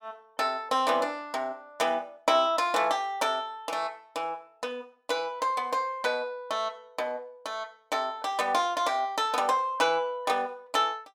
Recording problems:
none

